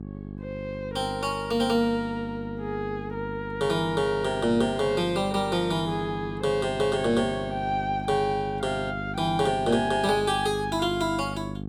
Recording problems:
electrical hum; 50 Hz, harmonics up to 800 Hz, SNR 10 dB

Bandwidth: 17 kHz